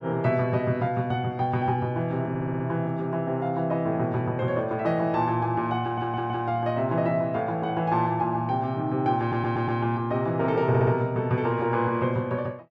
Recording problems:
stutter; 4 times, first at 2.5 s

